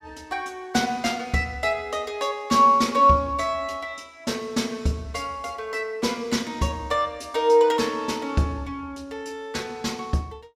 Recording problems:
none

